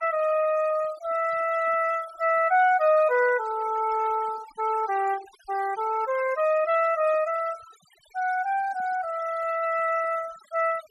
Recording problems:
noise reduction artefacts; signal-to-artefact ratio 20 dB

